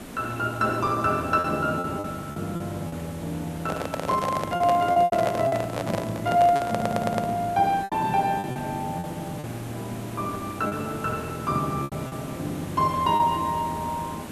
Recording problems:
background hiss; slope -6 dB per octave, SNR 13 dB
packet loss; 7% of the sound replaced, filled with repeated pitch periods
handling noise; from 3.5 to 7.5 s; peak +1 dB vs average level
stutter; at 6.5 s

